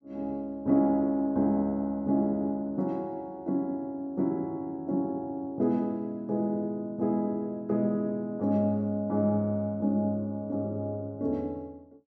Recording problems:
none

